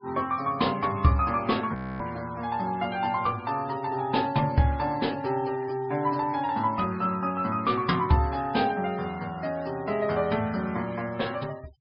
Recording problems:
treble cut off; nothing above 5.5 kHz
denoising artefacts; signal-to-artefact ratio 23 dB
audio freezing; at 2 s

